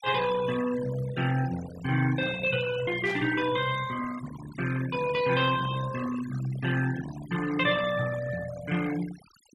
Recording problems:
denoising artefacts; signal-to-artefact ratio 13 dB
static burst; at 3 s; peak -9 dB vs average level

